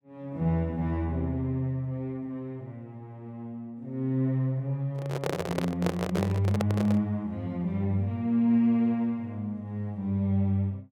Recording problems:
microphone handling noise; from 5 to 7 s; peak +2 dB vs average level

